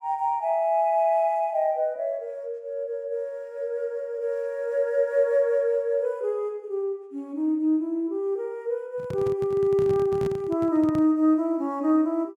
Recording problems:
handling noise; from 9 to 11 s; peak -4 dB vs average level

